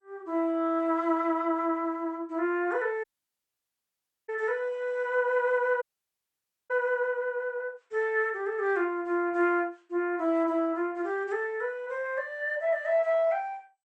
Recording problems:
codec artefacts; MP2, log-spectral distance 2 dB
dropout; at 3 s for 1 s and at 6 s for 1 s

